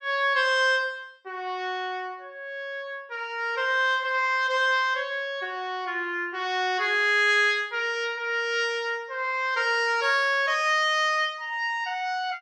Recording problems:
none

